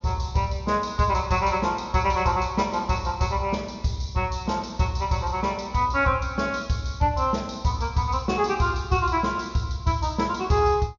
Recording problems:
treble missing; nothing above 6.8 kHz

